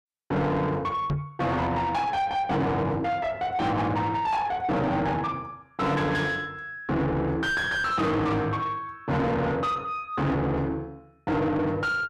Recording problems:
distortion; soft clipping, signal-to-distortion ratio 7 dB
microphone bump; at 1 s; peak +2 dB vs average level

